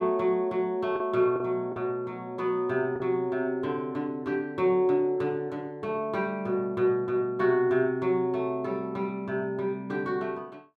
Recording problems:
lost packets; 1.5% of the sound replaced, filled with the last packet

